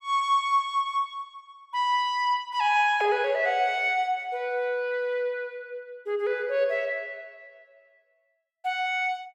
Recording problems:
none

